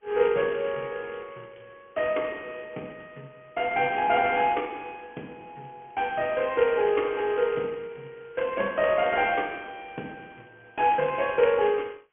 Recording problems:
telephone audio; 240 Hz to 3.4 kHz, G.726

